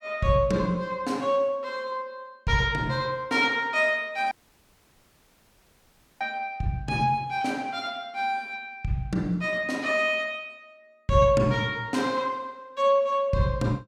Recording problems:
audio cutting out; at 4.5 s for 2 s

